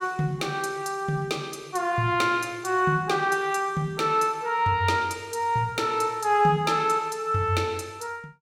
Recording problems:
none

